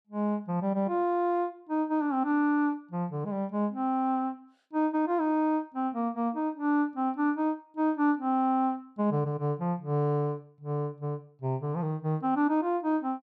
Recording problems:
none

